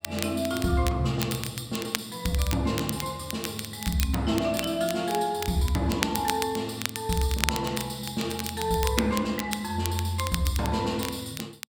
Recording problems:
crackling; vinyl, SNR 7 dB

